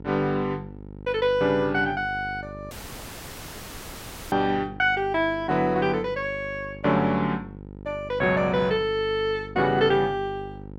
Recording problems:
hum; 50 Hz, harmonics up to 950 Hz, SNR 16 dB
audio cutting out; at 2.5 s for 1.5 s

